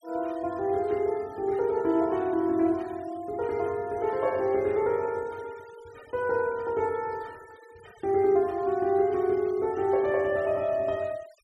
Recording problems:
noise reduction artefacts; signal-to-artefact ratio 26 dB

